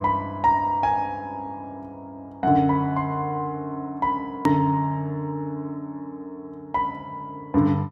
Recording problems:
hard cut with a click; at 4.5 s

